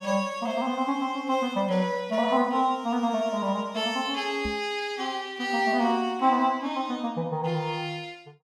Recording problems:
microphone bump; at 4.5 s; peak -4 dB vs average level

